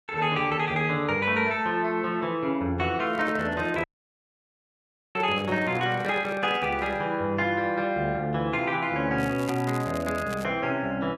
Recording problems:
microphone handling noise; from 3 to 7 s; peak -6 dB vs average level
dropout; at 4 s for 1.5 s
crackle; from 9 to 10 s; loose cable, SNR 18 dB

